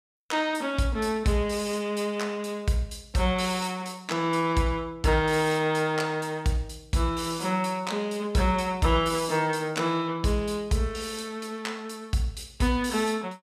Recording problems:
none

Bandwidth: 14.5 kHz